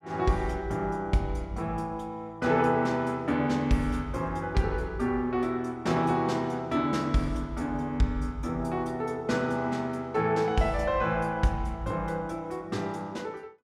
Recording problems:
none

